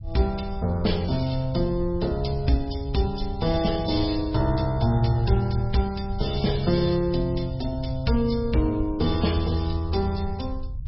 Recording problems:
lossy compression; MP3, log-spectral distance 4 dB, nothing above 5.3 kHz
low-frequency rumble; below 88 Hz, SNR 9 dB

